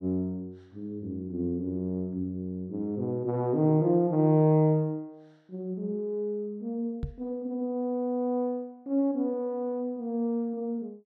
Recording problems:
knock on the microphone; at 7 s; peak -1 dB vs average level

